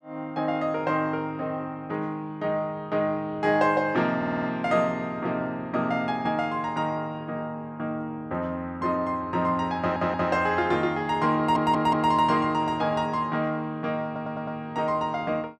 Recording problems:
audio stuttering; 4 times, first at 4 s

